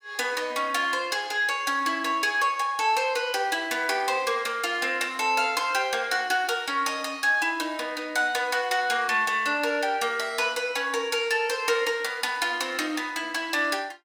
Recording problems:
none

